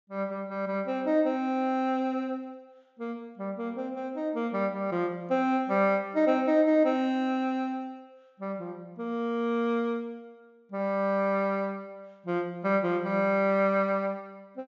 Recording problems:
low-pass filter; nothing above 8 kHz

